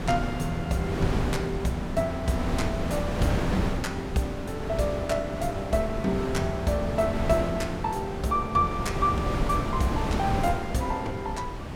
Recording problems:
wind noise; below 490 Hz, SNR 3 dB

